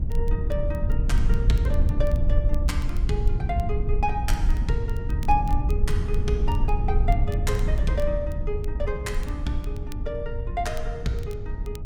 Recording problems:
mains hum; 60 Hz, harmonics up to 660 Hz, SNR 26 dB
rumble; below 72 Hz, SNR -4 dB
crackling; vinyl, SNR 22 dB

